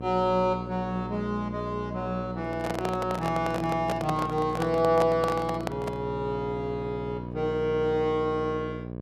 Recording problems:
hum; 60 Hz, harmonics up to 1.1 kHz, SNR 8 dB
handling noise; from 2.5 to 6 s; peak +2 dB vs average level

